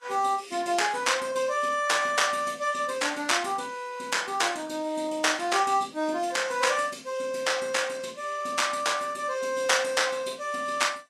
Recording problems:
codec artefacts; Vorbis, log-spectral distance 4 dB, nothing above 12.3 kHz

